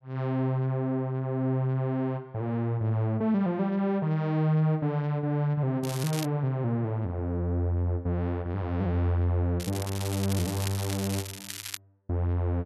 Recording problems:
crackling; at 6 s and from 9.5 to 12 s; loose cable, SNR 10 dB

